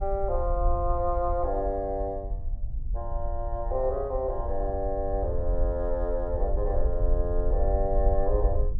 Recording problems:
wind noise; below 54 Hz, SNR 2 dB

